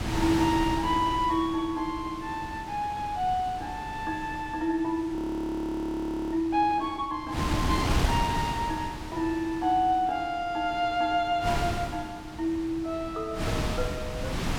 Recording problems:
wind on the microphone; below 960 Hz, SNR 6 dB
frozen audio; at 5 s for 1 s

